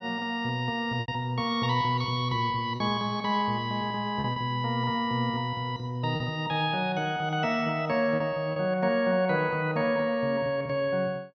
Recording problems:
packet loss; 3% of the sound replaced, filled with repeated pitch periods

